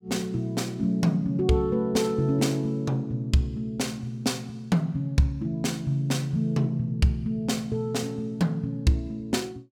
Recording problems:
none

